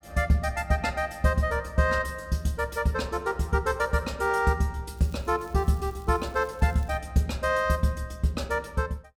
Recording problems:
crackle; from 5 to 7 s; loose cable, SNR 28 dB

